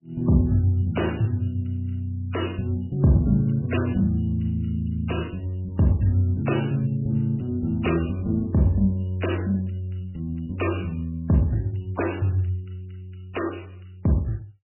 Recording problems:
codec artefacts; MP3, log-spectral distance 5 dB, nothing above 2.9 kHz

